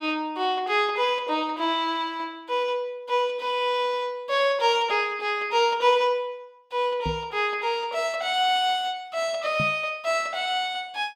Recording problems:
microphone bump; at 7 s and at 9.5 s; peak -2 dB vs average level

